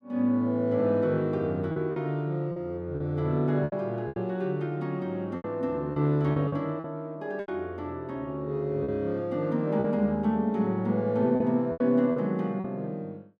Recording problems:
packet loss; 7% of the sound replaced, filled with repeated pitch periods

